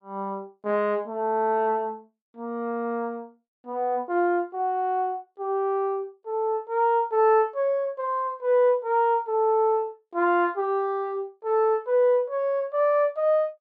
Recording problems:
none

